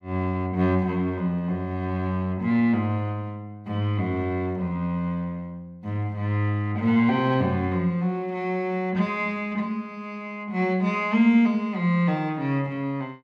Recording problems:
none

